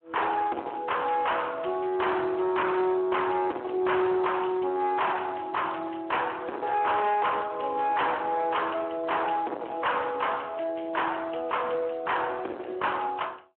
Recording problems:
phone line; 260 Hz to 3.3 kHz, Speex
distorted audio; hard clipping, uneven, signal-to-distortion ratio 5 dB

